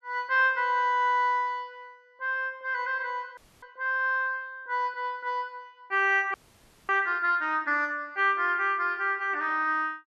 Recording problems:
frozen audio; at 3.5 s and at 6.5 s for 0.5 s

